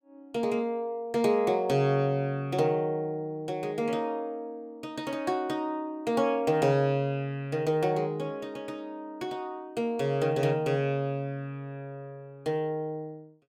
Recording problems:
none

